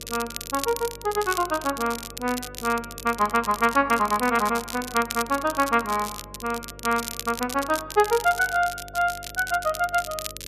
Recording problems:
electrical hum; 50 Hz, harmonics up to 600 Hz, SNR 21 dB
crackling; vinyl, SNR 11 dB

